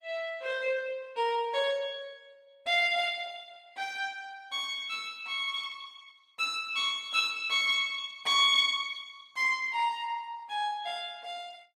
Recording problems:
codec artefacts; Opus, log-spectral distance 4 dB, nothing above 18.9 kHz

